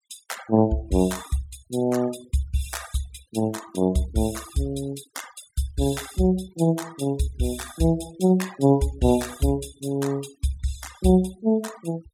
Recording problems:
denoising artefacts; signal-to-artefact ratio 20 dB

